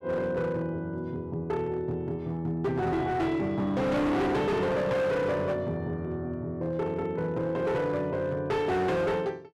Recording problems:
distortion; hard clipping, signal-to-distortion ratio 7 dB

